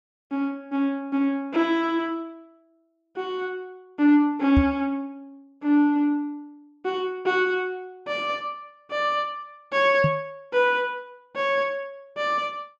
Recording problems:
microphone thump; at 4.5 s and at 10 s; peak +5 dB vs average level

